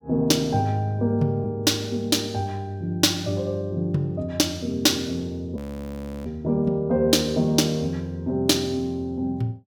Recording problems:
frozen audio; at 5.5 s for 0.5 s

